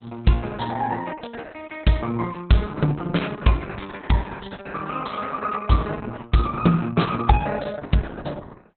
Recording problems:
lossy compression; Opus, log-spectral distance 5 dB, nothing above 4 kHz

